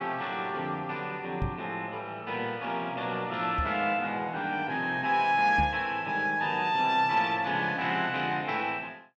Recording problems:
microphone thump; at 1.5 s, at 3.5 s and at 5.5 s; peak +1 dB vs average level

